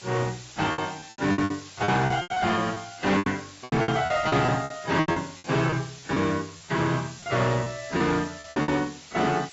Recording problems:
lossy codec; AAC, log-spectral distance 14 dB, nothing above 7.6 kHz
distorted audio; hard clipping, uneven, signal-to-distortion ratio 11 dB
background hiss; slope +1 dB per octave, SNR 17 dB
lost packets; 14% of the sound replaced, filled with repeated pitch periods

